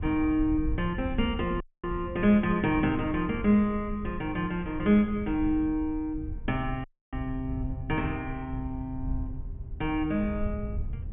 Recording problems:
low-pass filter; nothing above 3.3 kHz
rumble; below 84 Hz, SNR 10 dB
audio cutting out; at 1.5 s and at 7 s

